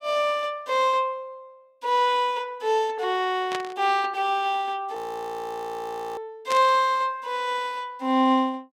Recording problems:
burst of static; at 3.5 s and at 6.5 s; peak -3 dB vs average level
audio freezing; at 5 s for 1 s

